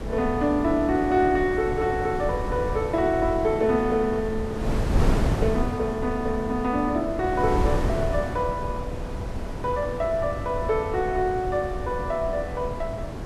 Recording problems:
wind on the microphone; below 300 Hz, SNR 5 dB

